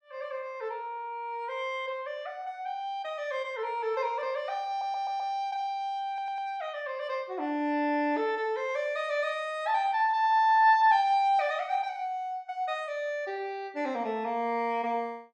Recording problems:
stutter; at 4.5 s and at 6 s

